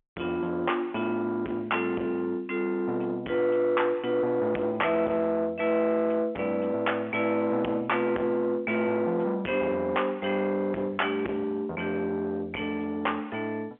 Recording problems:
telephone audio; 240 Hz to 3.2 kHz, G.711
distortion; soft clipping, signal-to-distortion ratio 10 dB

